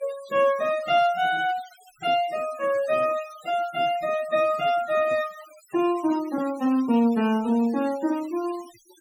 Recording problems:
noise reduction artefacts; signal-to-artefact ratio 20 dB

